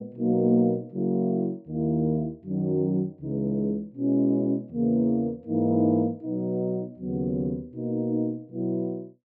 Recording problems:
none

